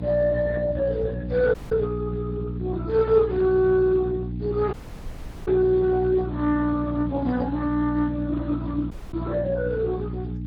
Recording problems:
codec artefacts; MP3, then Speex, log-spectral distance 2 dB
hum; 60 Hz, harmonics up to 300 Hz, SNR 7 dB
dropout; at 1.5 s, at 4.5 s for 0.5 s and at 9 s

